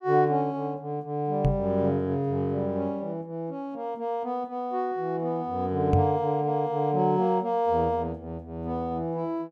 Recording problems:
knock on the microphone; at 1.5 s and at 6 s; peak +8 dB vs average level

